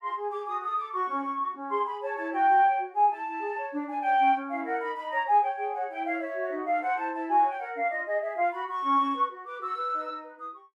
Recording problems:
none

